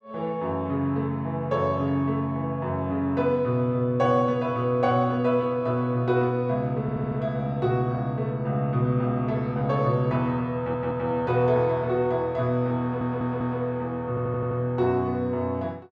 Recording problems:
audio stuttering; 4 times, first at 7 s

